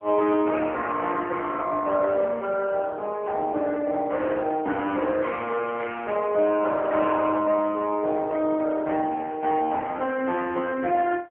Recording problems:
telephone audio; 240 Hz to 3.2 kHz, AMR-NB

